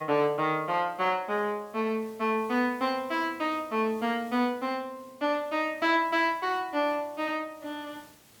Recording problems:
background hiss; slope -2 dB per octave, SNR 26 dB

